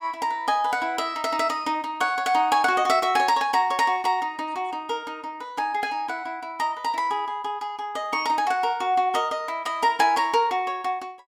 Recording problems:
none

